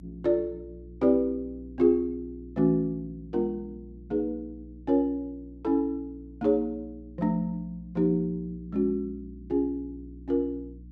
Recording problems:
hum; 60 Hz, harmonics up to 300 Hz, SNR 19 dB

